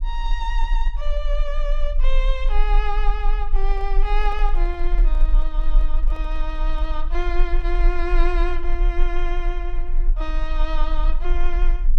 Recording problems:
rumble; below 34 Hz, strongest tone 20 Hz, SNR -6 dB
handling noise; from 3.5 to 7 s; peak -9 dB vs average level

